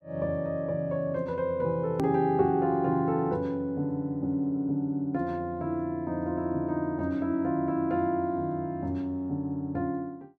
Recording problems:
edit click; at 2 s

